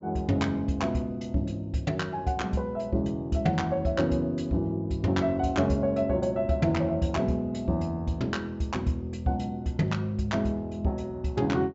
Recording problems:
low-pass filter; nothing above 8 kHz

